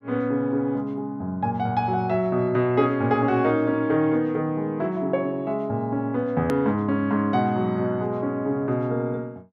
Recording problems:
click at an edit; at 6.5 s

